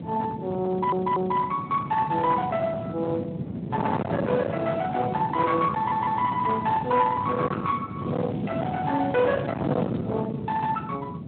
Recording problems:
phone line; 130 Hz to 3.6 kHz, Speex
distortion; hard clipping, signal-to-distortion ratio 7 dB
wind on the microphone; below 840 Hz, SNR 6 dB
stutter; at 0.5 s and at 6 s
crackling; from 8 to 10 s; loose cable, SNR 27 dB

